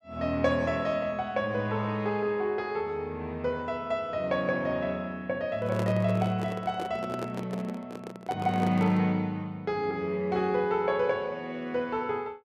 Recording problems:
microphone handling noise; from 5.5 to 9 s; peak -1 dB vs average level

